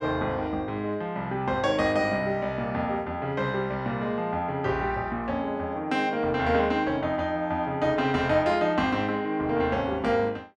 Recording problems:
none

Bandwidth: 12.5 kHz